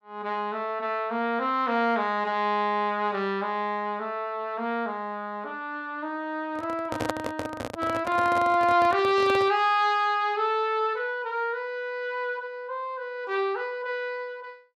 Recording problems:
microphone handling noise; from 6.5 to 9.5 s; peak +3 dB vs average level

